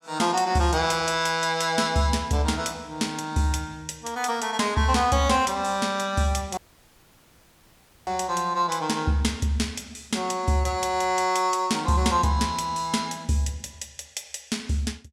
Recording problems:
dropout; at 6.5 s for 1.5 s

